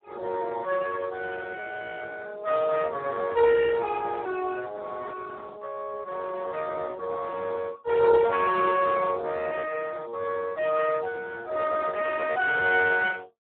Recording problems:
phone line; 320 Hz to 2.8 kHz, Speex

